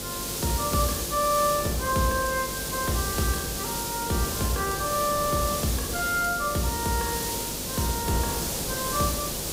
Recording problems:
hum; 50 Hz, harmonics up to 550 Hz, SNR 12 dB
hiss; SNR 2 dB
wind on the microphone; below 780 Hz, SNR 13 dB

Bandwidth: 15.5 kHz